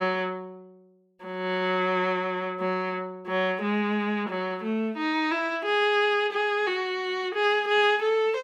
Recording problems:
none

